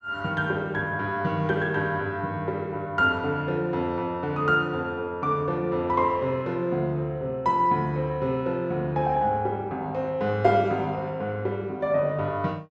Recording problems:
none

